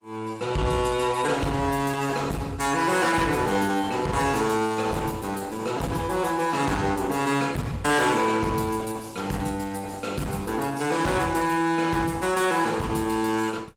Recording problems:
lossy codec; Opus, log-spectral distance 4 dB, nothing above 18.9 kHz
distortion; hard clipping, signal-to-distortion ratio 11 dB

